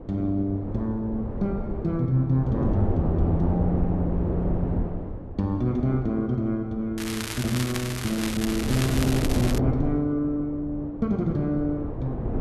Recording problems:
wind noise; below 340 Hz, SNR 4 dB
crackle; from 7 to 9.5 s; loose cable, SNR 6 dB

